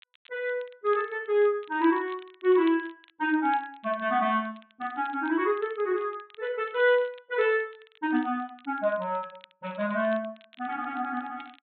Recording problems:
low-pass filter; nothing above 4 kHz
crackling; vinyl, SNR 27 dB

